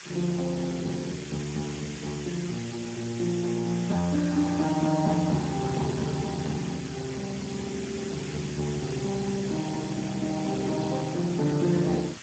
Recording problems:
lossy compression; Speex, log-spectral distance 14 dB
background hiss; SNR 11 dB
wind noise; below 440 Hz, SNR 23 dB

